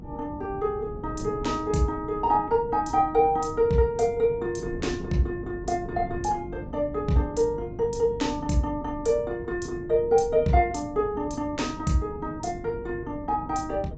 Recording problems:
treble missing; nothing above 8 kHz
hum; 50 Hz, harmonics up to 300 Hz, SNR 19 dB
wind on the microphone; below 240 Hz, SNR 14 dB

